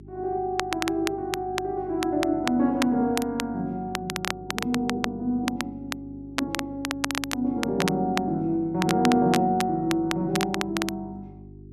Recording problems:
hum; 50 Hz, harmonics up to 400 Hz, SNR 18 dB
crackle; vinyl, SNR 7 dB

